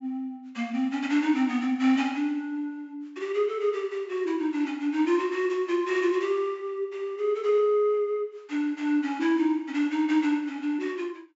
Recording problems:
low-pass filter; nothing above 7.6 kHz

